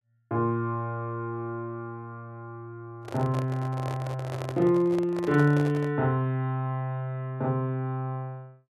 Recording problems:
microphone handling noise; from 3 to 6 s; peak -5 dB vs average level

